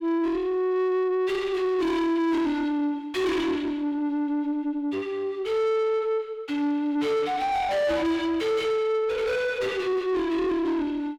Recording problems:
distorted audio; soft clipping, signal-to-distortion ratio 6 dB

